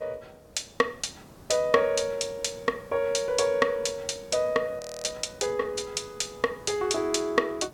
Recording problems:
background hiss; SNR 22 dB
frozen audio; at 5 s

